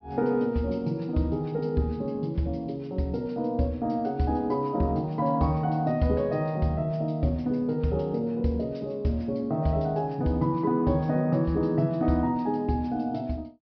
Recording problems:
treble cut off; nothing above 5.5 kHz

